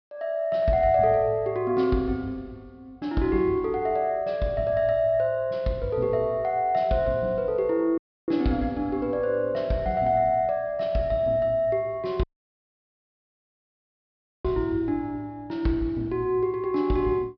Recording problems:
low-pass filter; nothing above 5.5 kHz
audio cutting out; at 8 s and at 12 s for 2 s

